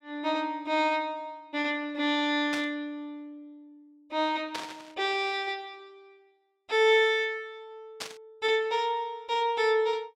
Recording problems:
static burst; at 2.5 s, at 4.5 s and at 8 s; peak -3 dB vs average level

